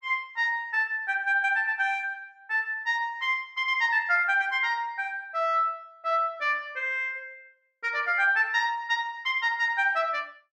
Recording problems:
none

